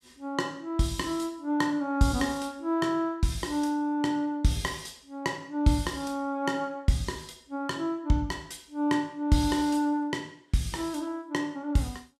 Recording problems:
none

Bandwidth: 15 kHz